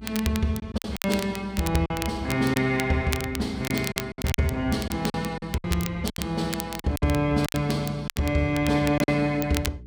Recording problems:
hum; 60 Hz, harmonics up to 420 Hz, SNR 20 dB
crackle; vinyl, SNR 11 dB
lost packets; 10% of the sound replaced, filled with silence

